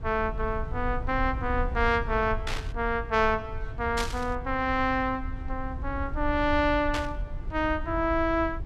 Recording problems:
rumble; below 76 Hz, SNR 8 dB
burst of static; at 2.5 s, at 4 s and at 7 s; peak -1 dB vs average level

